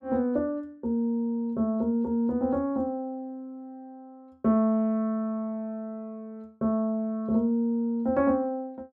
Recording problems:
none

